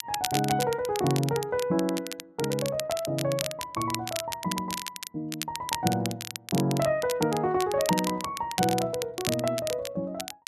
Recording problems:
crackling; vinyl, SNR 7 dB

